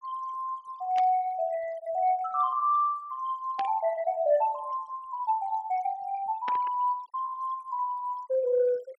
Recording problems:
noise reduction artefacts; signal-to-artefact ratio 22 dB
burst of static; at 1 s, at 3.5 s and at 6.5 s; peak -5 dB vs average level

